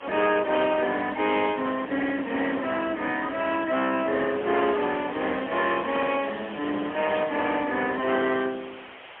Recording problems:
phone line; 280 Hz to 3.5 kHz, AMR-NB, then MP3
distortion; hard clipping, signal-to-distortion ratio 14 dB
hiss; SNR 17 dB
crackle; from 4.5 to 7 s; loose cable, SNR 21 dB

